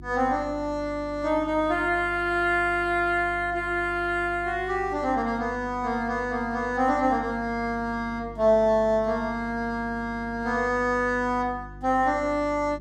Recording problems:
hum; 50 Hz, harmonics up to 350 Hz, SNR 18 dB

